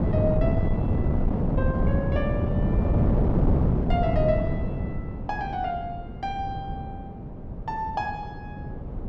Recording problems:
wind noise; below 230 Hz, SNR -6 dB

